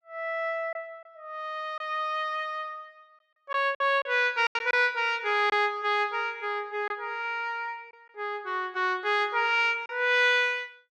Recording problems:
lost packets; 3% of the sound replaced, filled with silence

